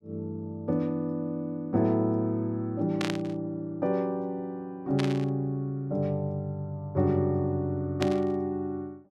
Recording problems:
burst of static; at 3 s, at 5 s and at 8 s; peak 0 dB vs average level

